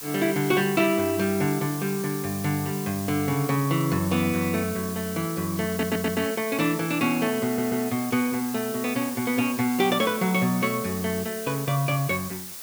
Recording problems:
background hiss; slope 0 dB per octave, SNR 10 dB
audio stuttering; at 5.5 s and at 7.5 s

